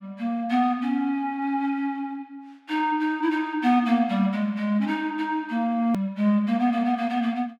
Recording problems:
edit click; at 6 s

